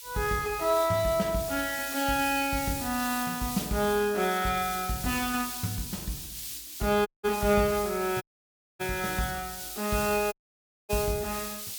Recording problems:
hiss; slope +8 dB per octave, SNR 8 dB
dropout; at 7 s, at 8 s for 0.5 s and at 10 s for 0.5 s

